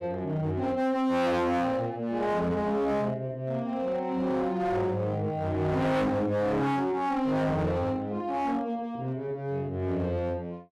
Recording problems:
distorted audio; hard clipping, signal-to-distortion ratio 6 dB

